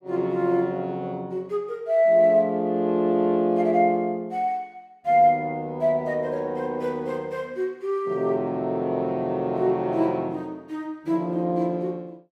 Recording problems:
none

